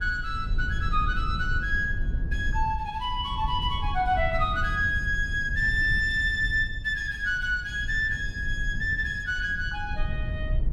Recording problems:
rumble; below 78 Hz, SNR 7 dB

